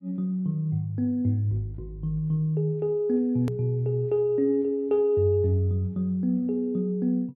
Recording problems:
edit click; at 3.5 s

